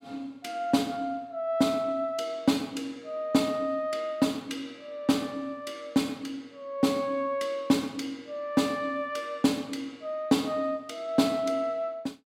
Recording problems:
none

